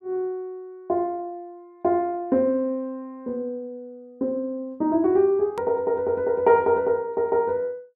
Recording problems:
edit click; at 5.5 s

